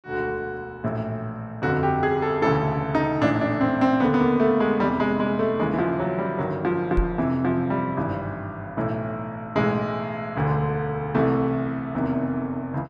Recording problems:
microphone bump; at 7 s; peak +3 dB vs average level

